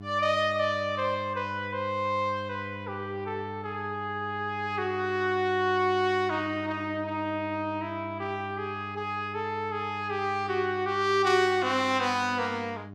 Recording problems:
electrical hum; 50 Hz, harmonics up to 1.1 kHz, SNR 14 dB

